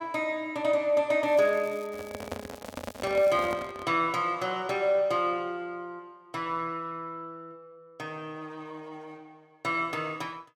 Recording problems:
crackling; from 1 to 3.5 s; loose cable, SNR 25 dB
handling noise; from 2 to 4 s; peak -3 dB vs average level

